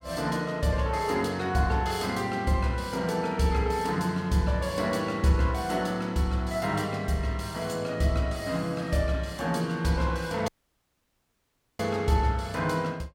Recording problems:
dropout; at 10 s for 1.5 s

